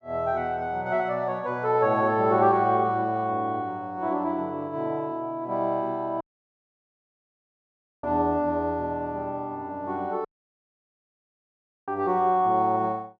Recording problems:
dropout; at 6 s for 2 s and at 10 s for 1.5 s

